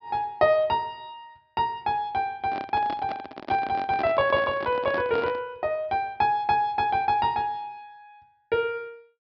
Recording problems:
treble missing; nothing above 5.5 kHz
handling noise; from 2.5 to 5.5 s; peak -4 dB vs average level

